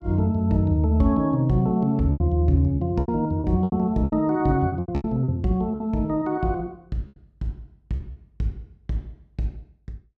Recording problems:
lost packets; 10% of the sound replaced, filled with repeated pitch periods

